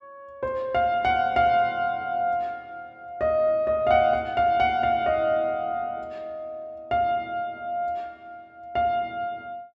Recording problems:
none

